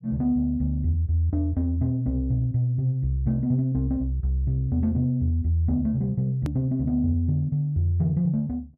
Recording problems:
click at an edit; at 6.5 s

